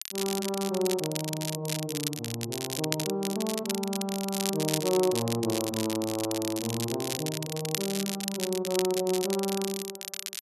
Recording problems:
crackle; vinyl, SNR 3 dB

